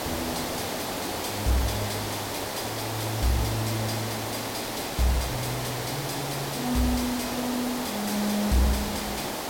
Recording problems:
distortion; soft clipping, signal-to-distortion ratio 11 dB
hiss; slope -4 dB per octave, SNR 1 dB

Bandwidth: 16.5 kHz